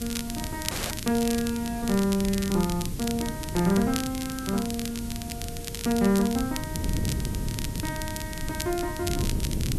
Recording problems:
hiss; slope +1 dB per octave, SNR 14 dB
wind noise; below 200 Hz, SNR 7 dB
crackle; vinyl, SNR 8 dB
dropout; at 0.5 s

